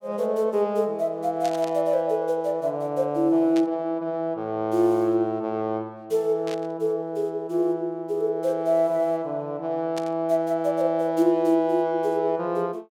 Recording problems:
static burst; 4 times, first at 1.5 s; peak -8 dB vs average level

